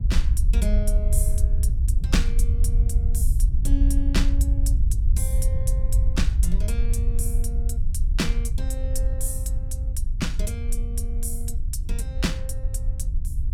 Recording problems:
rumble; below 64 Hz, SNR -8 dB

